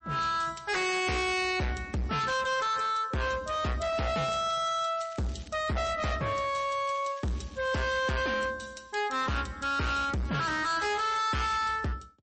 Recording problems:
lossy codec; MP3, log-spectral distance 4 dB, nothing above 8.2 kHz
distortion; hard clipping, signal-to-distortion ratio 6 dB
crackling; from 4 to 5.5 s, from 6.5 to 8 s and at 10 s; loose cable, SNR 24 dB

